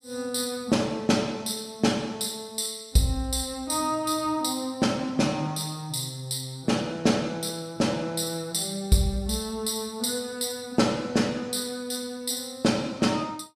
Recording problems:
none

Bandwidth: 15 kHz